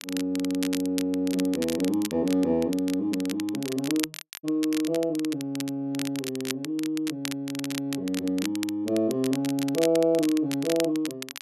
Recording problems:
crackling; vinyl, SNR 10 dB

